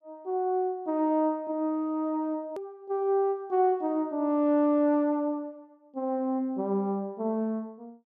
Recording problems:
click at an edit; at 2.5 s

